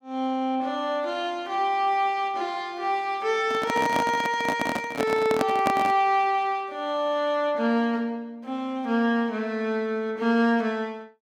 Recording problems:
microphone handling noise; from 3.5 to 6 s; peak +3 dB vs average level

